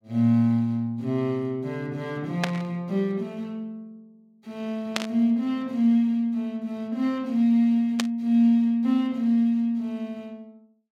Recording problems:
burst of static; at 2.5 s, at 5 s and at 8 s; peak +2 dB vs average level

